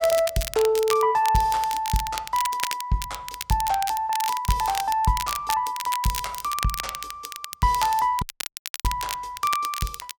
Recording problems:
crackle; vinyl, SNR 8 dB
dropout; at 8 s for 0.5 s

